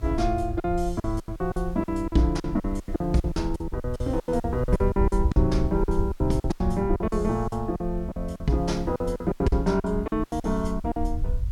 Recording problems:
hiss; slope -2 dB per octave, SNR 30 dB
low-frequency rumble; below 74 Hz, SNR 6 dB
packet loss; 18% of the sound replaced, filled with silence

